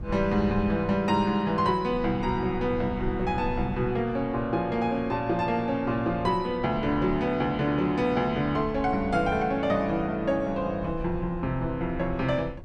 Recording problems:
rumble; below 100 Hz, SNR 15 dB

